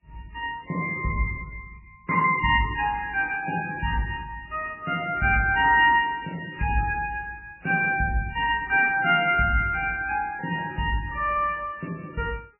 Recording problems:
lossy codec; MP3, log-spectral distance 5 dB, nothing above 2.4 kHz

